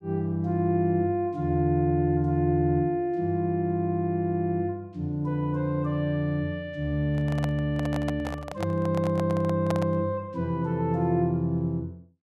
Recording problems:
handling noise; from 7 to 10 s; peak -2 dB vs average level

